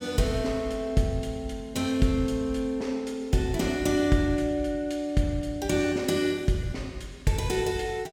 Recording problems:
none

